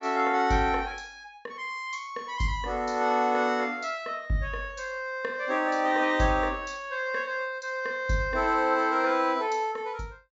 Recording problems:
treble missing; nothing above 8 kHz

